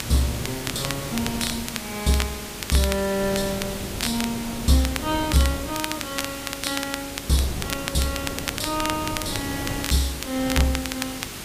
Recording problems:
hum; 50 Hz, harmonics up to 450 Hz, SNR 18 dB
background hiss; slope -1 dB per octave, SNR 7 dB
wind noise; below 450 Hz, SNR 10 dB
crackle; vinyl, SNR 7 dB

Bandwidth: 15 kHz